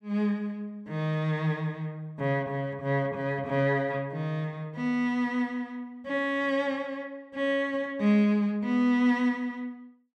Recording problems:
none

